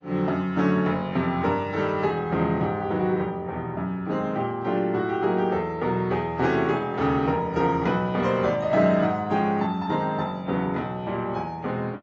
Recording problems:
codec artefacts; AAC, log-spectral distance 2 dB, nothing above 7.3 kHz

